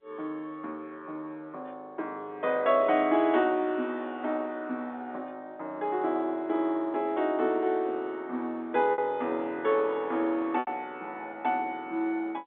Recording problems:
phone line; 240 Hz to 3.8 kHz, G.711
lost packets; 1.1% of the sound replaced, filled with repeated pitch periods

